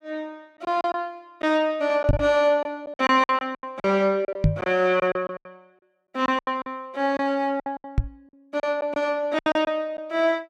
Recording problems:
packet loss; 13% of the sound replaced, filled with silence
microphone thump; at 2 s, at 4.5 s and at 8 s; peak +8 dB vs average level

